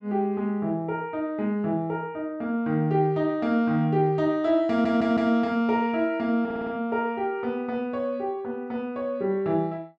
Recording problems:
stutter; at 4.5 s and at 6.5 s

